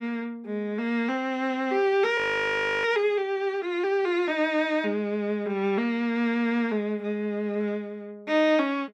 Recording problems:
frozen audio; at 2 s for 0.5 s

